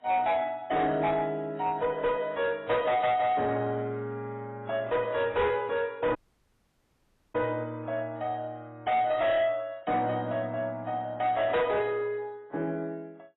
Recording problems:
lossy compression; AAC, log-spectral distance 2 dB, nothing above 3.8 kHz
distortion; soft clipping, signal-to-distortion ratio 10 dB
dropout; at 6 s for 1 s

